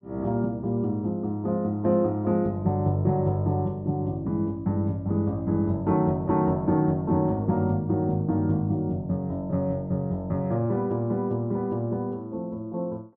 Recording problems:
none

